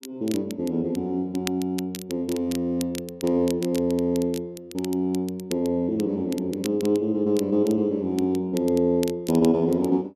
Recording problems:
crackling; vinyl, SNR 16 dB

